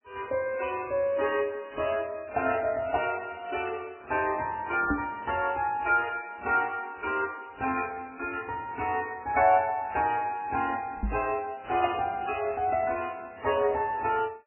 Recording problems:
lossy codec; AAC, then MP3, log-spectral distance 3 dB, nothing above 2.7 kHz
microphone bump; at 5 s and at 11 s; peak +3 dB vs average level

